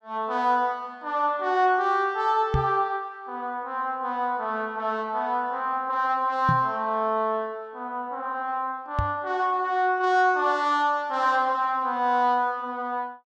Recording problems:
knock on the microphone; at 2.5 s, at 6.5 s and at 9 s; peak +4 dB vs average level

